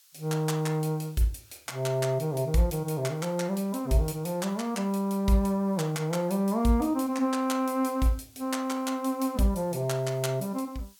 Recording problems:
hiss; slope +5 dB per octave, SNR 28 dB

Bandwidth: 17.5 kHz